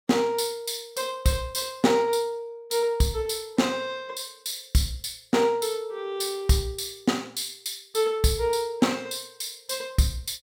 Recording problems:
none

